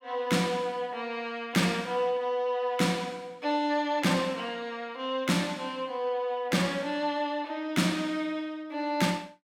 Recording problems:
none

